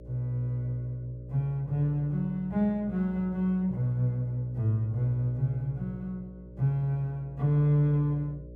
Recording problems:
hum; 60 Hz, harmonics up to 600 Hz, SNR 18 dB

